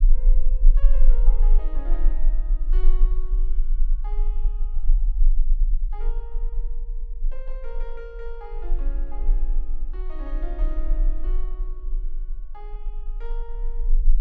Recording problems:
low-frequency rumble; below 32 Hz, strongest tone 18 Hz, SNR -17 dB

